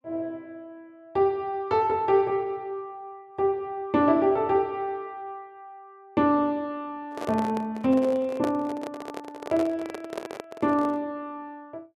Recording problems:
microphone handling noise; from 7 to 11 s; peak -3 dB vs average level

